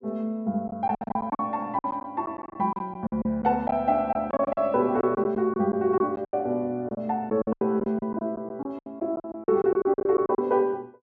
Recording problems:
lost packets; 15% of the sound replaced, filled with silence

